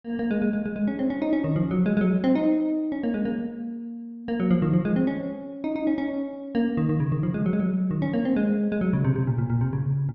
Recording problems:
none

